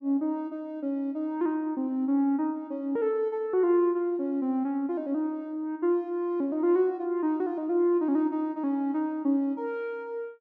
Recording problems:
none

